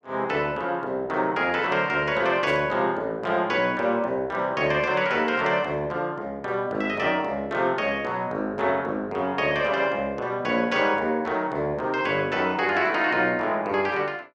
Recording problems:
static burst; at 2.5 s; peak -15 dB vs average level

